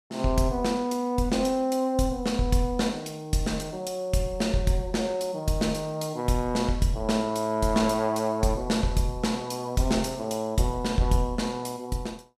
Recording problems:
none

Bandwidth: 14.5 kHz